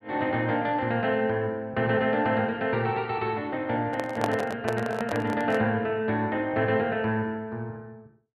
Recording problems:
handling noise; from 4 to 5.5 s; peak +3 dB vs average level

